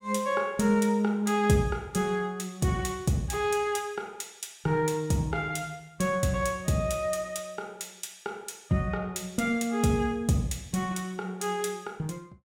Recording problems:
none

